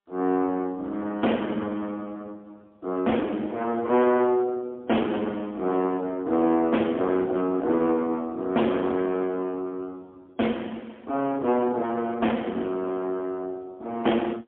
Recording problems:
telephone audio; 240 Hz to 3.7 kHz, AMR-NB, then MP3
distorted audio; hard clipping, uneven, signal-to-distortion ratio 10 dB

